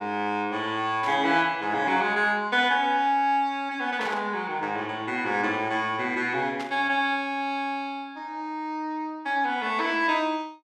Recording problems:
burst of static; at 1 s, at 4 s and at 6.5 s; peak -7 dB vs average level

